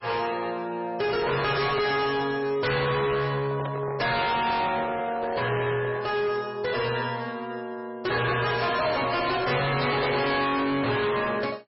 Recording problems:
lossy compression; MP3, log-spectral distance 6 dB, nothing above 5.2 kHz
distorted audio; hard clipping, signal-to-distortion ratio 6 dB
handling noise; from 3.5 to 6 s; peak -6 dB vs average level

